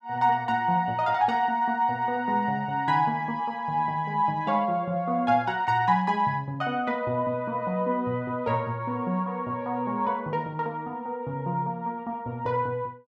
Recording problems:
none

